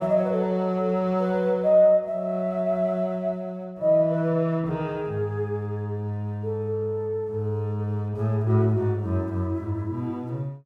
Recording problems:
none

